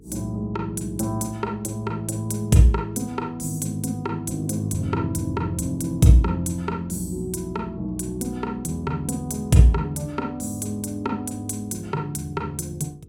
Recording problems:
hum; 50 Hz, harmonics up to 450 Hz, SNR 26 dB

